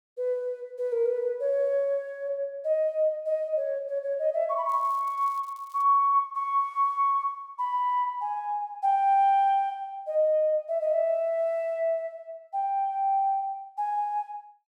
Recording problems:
crackling; from 4.5 to 6 s; loose cable, SNR 30 dB

